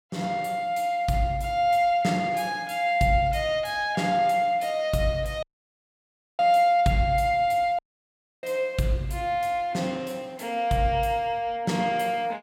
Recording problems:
dropout; at 5.5 s for 1 s and at 8 s for 0.5 s

